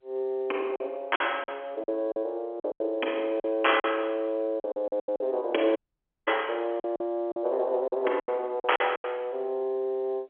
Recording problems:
phone line; 260 Hz to 3.3 kHz, G.711
packet loss; 11% of the sound replaced, filled with silence
dropout; at 6 s for 0.5 s

